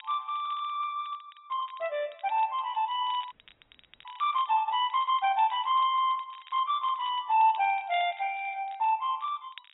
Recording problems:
treble missing; nothing above 3 kHz
lossy codec; Opus, log-spectral distance 2 dB
crackling; vinyl, SNR 26 dB
audio freezing; at 3.5 s for 0.5 s

